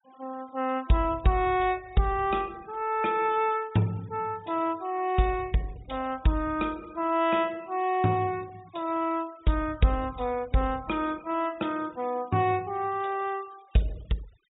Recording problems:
treble cut off; nothing above 4 kHz
noise reduction artefacts; signal-to-artefact ratio 25 dB

